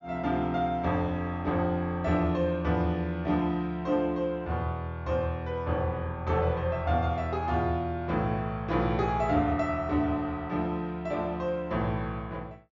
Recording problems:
treble missing; nothing above 7.3 kHz

